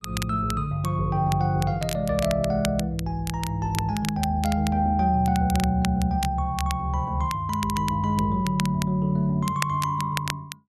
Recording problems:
crackling; vinyl, SNR 12 dB

